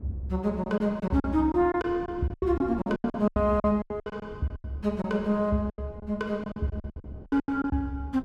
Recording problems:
wind on the microphone; below 280 Hz, SNR 18 dB
lost packets; 17% of the sound replaced, filled with silence

